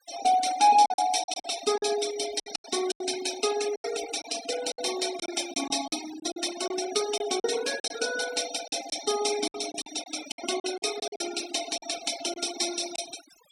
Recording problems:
denoising artefacts; signal-to-artefact ratio 10 dB
lost packets; 11% of the sound replaced, filled with silence

